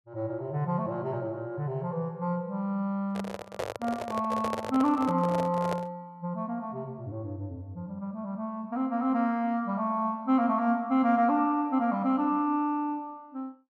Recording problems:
handling noise; from 3 to 6 s; peak 0 dB vs average level

